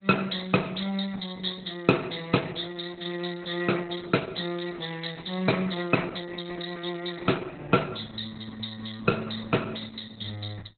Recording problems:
lossy codec; Opus, log-spectral distance 8 dB, nothing above 4 kHz

